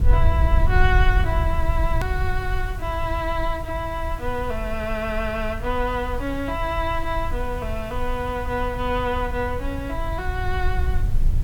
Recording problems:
background hiss; slope -2 dB per octave, SNR 20 dB
low-frequency rumble; below 72 Hz, SNR 1 dB
click at an edit; at 2 s

